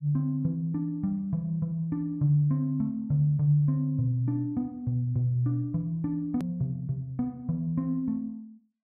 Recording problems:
click at an edit; at 6.5 s

